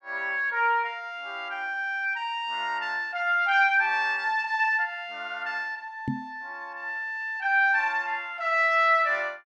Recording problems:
knock on the microphone; at 6 s; peak -1 dB vs average level

